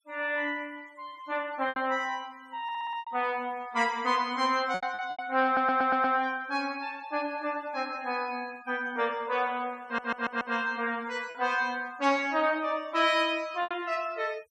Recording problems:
noise reduction artefacts; signal-to-artefact ratio 25 dB
lost packets; 4% of the sound replaced, filled with repeated pitch periods
audio stuttering; at 2.5 s, at 5.5 s and at 10 s

